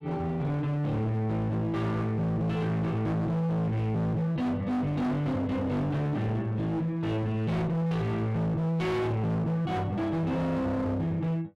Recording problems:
distorted audio; hard clipping, signal-to-distortion ratio 7 dB

